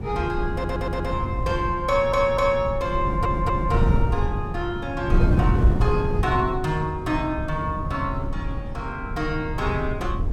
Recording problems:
wind on the microphone; below 140 Hz, SNR 1 dB
stutter; at 0.5 s, at 2 s and at 3 s

